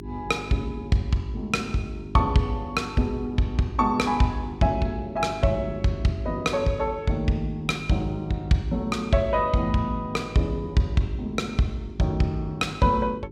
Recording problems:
electrical hum; 50 Hz, harmonics up to 400 Hz, SNR 15 dB

